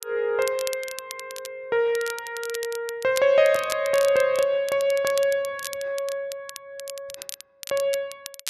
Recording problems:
crackling; vinyl, SNR 14 dB

